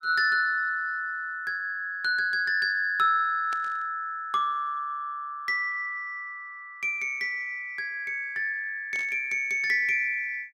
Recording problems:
static burst; at 3.5 s and at 9 s; peak -11 dB vs average level

